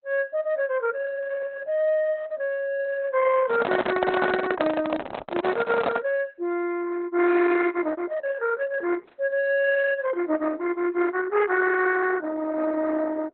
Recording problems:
lossy compression; Opus, log-spectral distance 3 dB, nothing above 4 kHz
microphone handling noise; from 3.5 to 6 s; peak +4 dB vs average level

